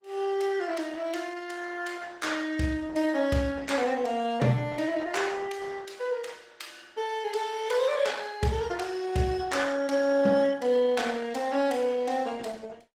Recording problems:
lossy codec; Opus, log-spectral distance 4 dB, nothing above 18.9 kHz

